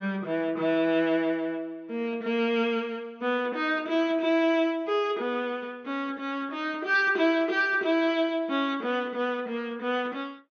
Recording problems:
treble missing; nothing above 6.6 kHz

